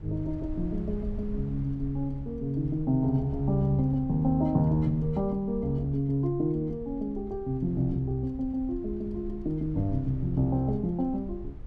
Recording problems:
rumble; below 80 Hz, SNR 13 dB

